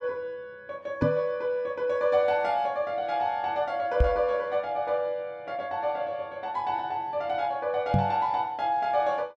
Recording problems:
knock on the microphone; at 1 s, at 4 s and at 8 s; peak +7 dB vs average level

